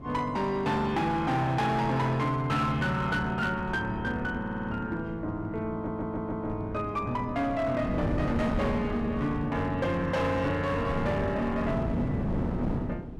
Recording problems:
distortion; hard clipping, signal-to-distortion ratio 10 dB
wind noise; below 300 Hz, SNR 7 dB
audio stuttering; at 4.5 s and at 5.5 s

